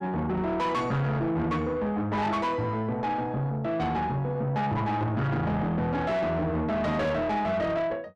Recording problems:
distortion; soft clipping, signal-to-distortion ratio 7 dB

